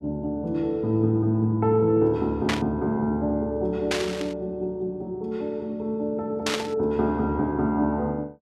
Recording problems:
burst of static; at 2.5 s, at 4 s and at 6.5 s; peak +3 dB vs average level

